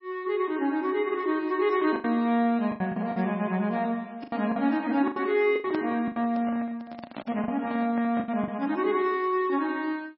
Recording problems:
codec artefacts; MP3, log-spectral distance 2 dB
packet loss; 8% of the sound replaced, filled with the last packet
microphone handling noise; from 5.5 to 8.5 s; peak -5 dB vs average level

